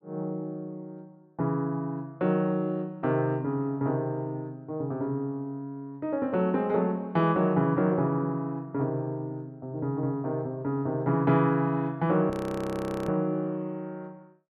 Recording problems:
frozen audio; at 12 s for 1 s

